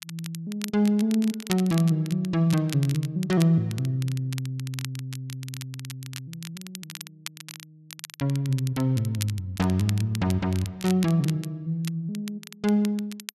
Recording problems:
crackle; vinyl, SNR 15 dB

